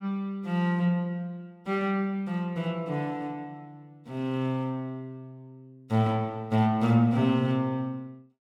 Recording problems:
none

